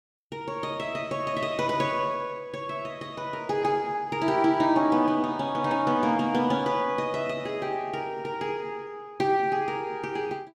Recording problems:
none

